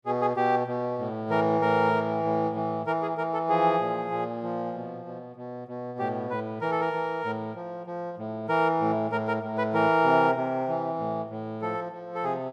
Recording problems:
none

